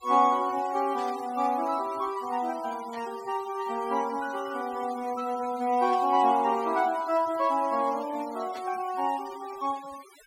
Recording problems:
noise reduction artefacts; signal-to-artefact ratio 19 dB
burst of static; 4 times, first at 1 s; peak -15 dB vs average level

